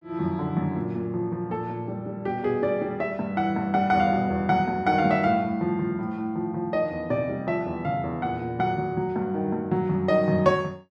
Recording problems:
none

